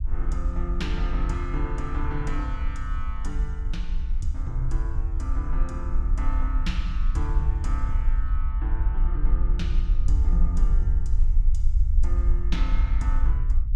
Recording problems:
rumble; below 54 Hz, strongest tone 22 Hz, SNR -8 dB

